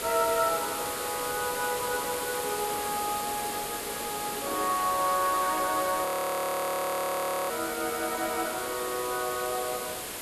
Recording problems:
background hiss; slope -3 dB per octave, SNR 4 dB
frozen audio; at 6 s for 1.5 s

